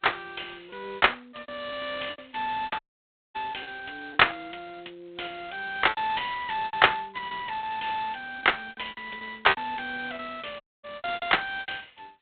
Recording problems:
phone line; 260 Hz to 3.7 kHz, G.726
packet loss; 12% of the sound replaced, filled with repeated pitch periods
audio cutting out; at 3 s for 0.5 s and at 11 s

